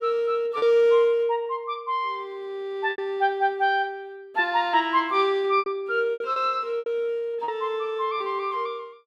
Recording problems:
lost packets; 5% of the sound replaced, filled with repeated pitch periods

